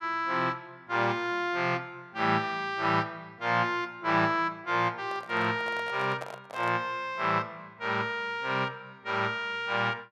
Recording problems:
handling noise; from 5 to 7 s; peak -6 dB vs average level

